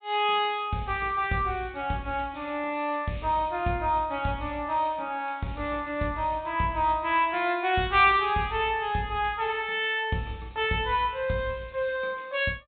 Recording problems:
treble missing; nothing above 4 kHz

